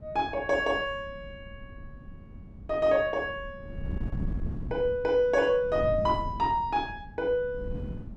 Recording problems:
wind noise; below 180 Hz, SNR 12 dB

